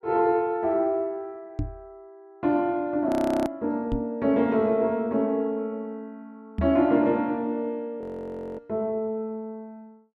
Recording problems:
microphone bump; at 1.5 s, at 4 s and at 6.5 s; peak +2 dB vs average level
audio freezing; at 3 s and at 8 s for 0.5 s

